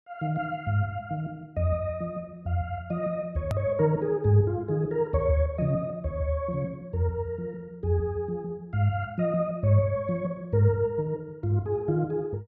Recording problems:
edit click; at 3.5 s

